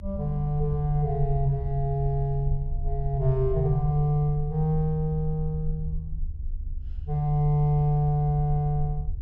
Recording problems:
low-frequency rumble; below 64 Hz, strongest tone 28 Hz, SNR 8 dB

